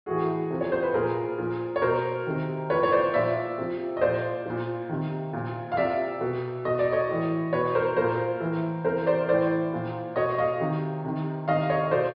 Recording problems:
low-pass filter; nothing above 5.2 kHz

